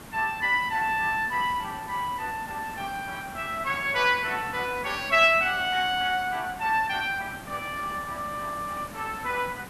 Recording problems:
background hiss; slope -5 dB per octave, SNR 15 dB

